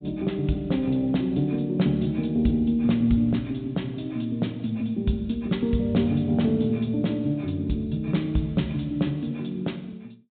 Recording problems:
treble missing; nothing above 4 kHz

